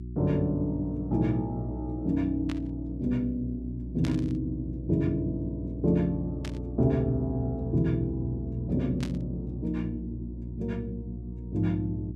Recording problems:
electrical hum; 60 Hz, harmonics up to 360 Hz, SNR 8 dB
burst of static; 4 times, first at 2.5 s; peak -6 dB vs average level

